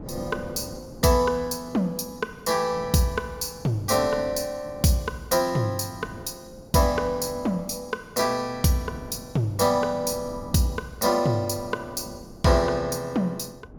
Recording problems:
wind on the microphone; below 370 Hz, SNR 18 dB

